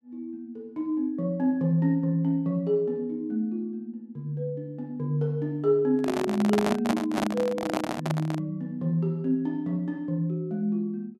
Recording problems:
handling noise; from 6 to 8.5 s; peak +4 dB vs average level

